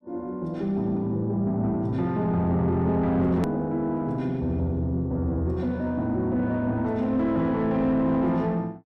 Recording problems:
distortion; soft clipping, signal-to-distortion ratio 10 dB
edit click; at 3.5 s

